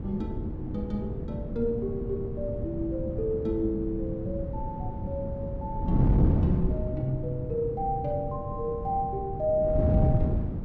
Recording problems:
wind on the microphone; below 200 Hz, SNR 0 dB

